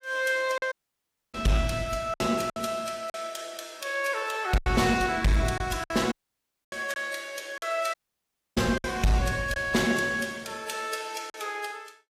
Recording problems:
codec artefacts; AAC, log-spectral distance 4 dB, nothing above 14.7 kHz
distorted audio; hard clipping, uneven, signal-to-distortion ratio 12 dB
lost packets; 7% of the sound replaced, filled with silence
audio cutting out; at 0.5 s for 0.5 s, at 6 s for 0.5 s and at 8 s for 0.5 s

